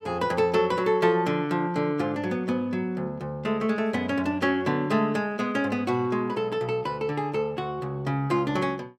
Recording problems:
none

